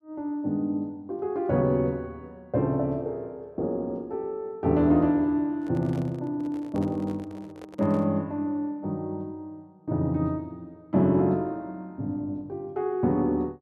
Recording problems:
microphone handling noise; from 5.5 to 8 s; peak -10 dB vs average level

